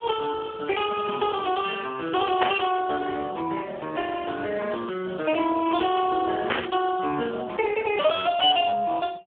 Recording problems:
telephone audio; 300 Hz to 2.9 kHz, Speex
static burst; at 2.5 s and at 6.5 s; peak +5 dB vs average level

